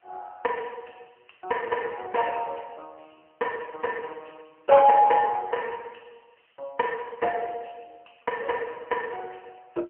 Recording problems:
phone line; 320 Hz to 3 kHz, AMR-NB
background hiss; SNR 43 dB

